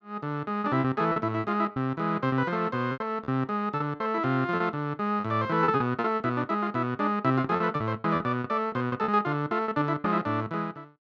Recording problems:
lost packets; 10% of the sound replaced, filled with repeated pitch periods

